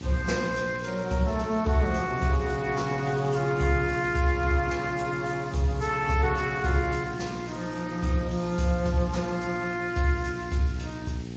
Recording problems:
codec artefacts; MP3, then Speex, log-spectral distance 4 dB, nothing above 7.3 kHz
hum; 60 Hz, harmonics up to 900 Hz, SNR 12 dB
hiss; SNR 22 dB

